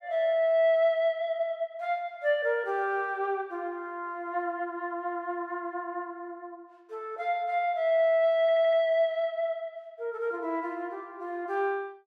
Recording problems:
stutter; at 8.5 s

